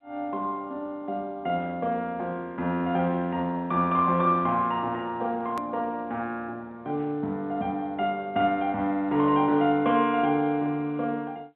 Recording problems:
telephone audio; 110 Hz to 3.8 kHz, G.711
edit click; at 5.5 s

